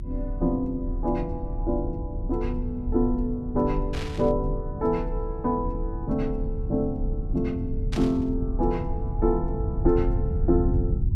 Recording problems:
hum; 50 Hz, harmonics up to 350 Hz, SNR 20 dB
low-frequency rumble; below 90 Hz, strongest tone 36 Hz, SNR 4 dB
burst of static; at 4 s and at 8 s; peak -5 dB vs average level

